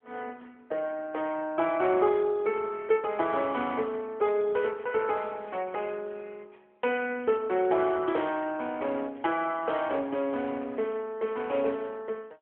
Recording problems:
telephone audio; 260 Hz to 3.4 kHz, AMR-NB

